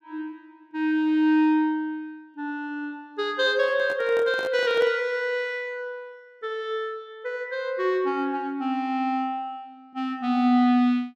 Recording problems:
microphone handling noise; from 3.5 to 5 s; peak -8 dB vs average level

